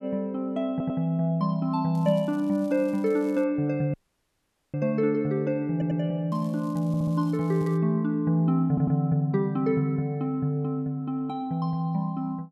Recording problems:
stutter; 4 times, first at 0.5 s
crackle; from 2 to 3.5 s and from 6.5 to 8 s; loose cable, SNR 29 dB
dropout; at 4 s for 1 s

